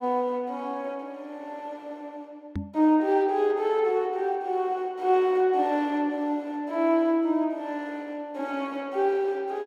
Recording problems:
knock on the microphone; at 2.5 s; peak -1 dB vs average level

